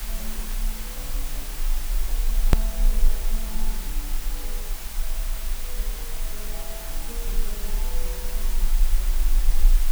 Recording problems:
mains hum; 60 Hz, harmonics up to 660 Hz, SNR 18 dB
background hiss; slope 0 dB per octave, SNR -10 dB
rumble; below 34 Hz, strongest tone 20 Hz, SNR -15 dB
edit click; at 2.5 s

